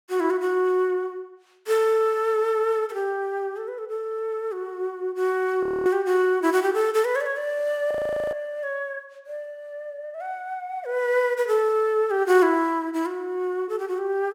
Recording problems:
audio freezing; at 5.5 s and at 8 s

